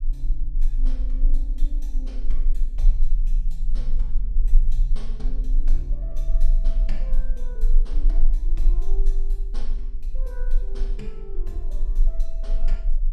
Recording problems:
low-frequency rumble; below 32 Hz, strongest tone 22 Hz, SNR -16 dB

